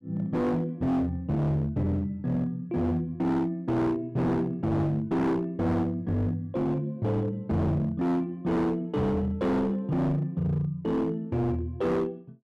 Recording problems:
distorted audio; hard clipping, signal-to-distortion ratio 7 dB

